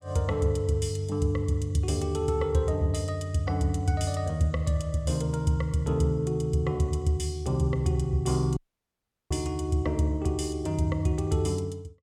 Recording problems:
audio cutting out; at 8.5 s for 0.5 s

